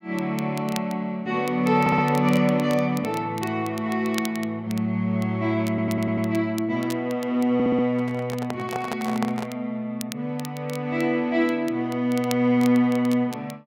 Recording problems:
crackling; vinyl, SNR 18 dB
audio stuttering; at 2 s, at 5.5 s and at 7.5 s
microphone handling noise; from 8 to 9.5 s; peak -2 dB vs average level

